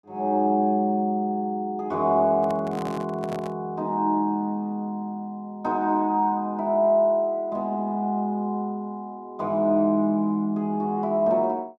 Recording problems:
microphone handling noise; from 2.5 to 3.5 s; peak -8 dB vs average level

